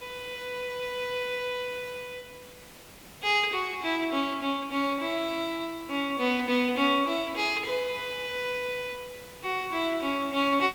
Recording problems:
hiss; slope -3 dB per octave, SNR 19 dB

